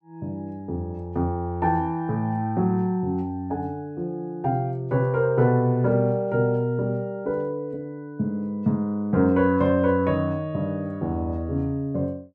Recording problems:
none

